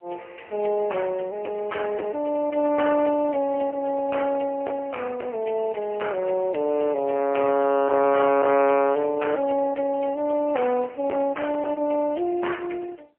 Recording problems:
telephone audio; 320 Hz to 3.1 kHz, AMR-NB, then MP3
distorted audio; hard clipping, uneven, signal-to-distortion ratio 11 dB

